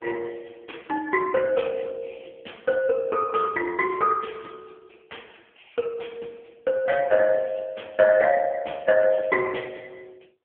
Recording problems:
telephone audio; 240 Hz to 2.5 kHz, AMR-NB

